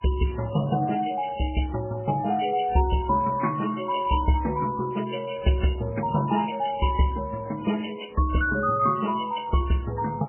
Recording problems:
codec artefacts; MP3, then MP3, log-spectral distance 6 dB, nothing above 2.9 kHz

